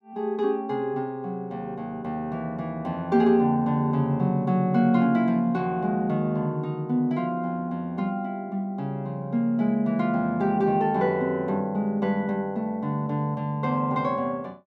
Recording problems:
none

